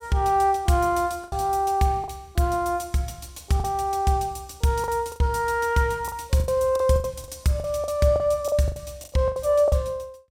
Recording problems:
lost packets; 10% of the sound replaced, filled with the last packet

